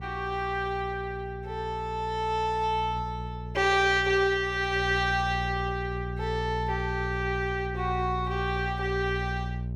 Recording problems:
mains hum; 60 Hz, harmonics up to 420 Hz, SNR 8 dB

